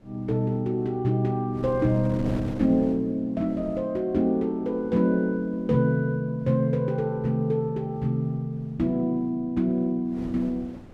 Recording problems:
wind noise; below 390 Hz, SNR 16 dB

